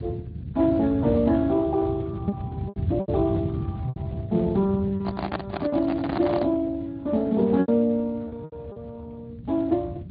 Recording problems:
treble cut off; nothing above 4.2 kHz
lossy compression; Speex, log-spectral distance 3 dB
rumble; below 200 Hz, SNR 9 dB
packet loss; 6% of the sound replaced, filled with repeated pitch periods
handling noise; from 5 to 6.5 s; peak 0 dB vs average level

